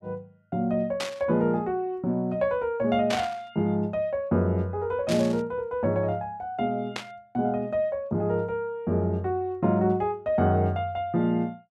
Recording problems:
static burst; 4 times, first at 1 s; peak 0 dB vs average level

